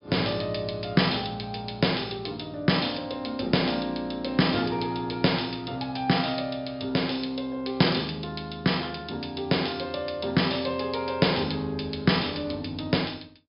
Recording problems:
treble missing; nothing above 5.5 kHz

